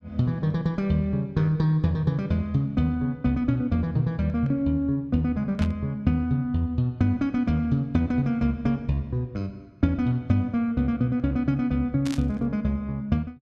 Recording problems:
burst of static; at 5.5 s and at 12 s; peak -7 dB vs average level

